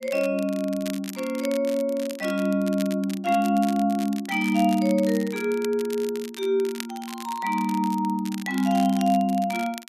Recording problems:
crackle; vinyl, SNR 16 dB

